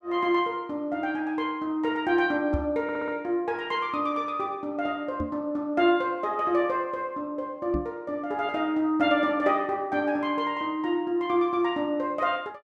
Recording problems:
microphone bump; at 2.5 s, at 5 s and at 7.5 s; peak +1 dB vs average level
audio stuttering; at 3 s

